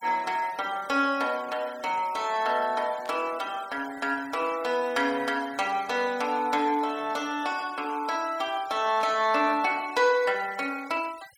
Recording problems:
noise reduction artefacts; signal-to-artefact ratio 20 dB
burst of static; at 3 s, at 5 s and at 9 s; peak -14 dB vs average level

